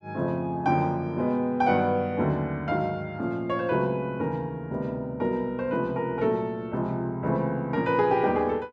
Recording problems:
none

